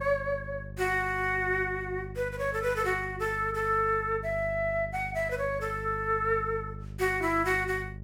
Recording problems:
mains hum; 50 Hz, harmonics up to 600 Hz, SNR 12 dB

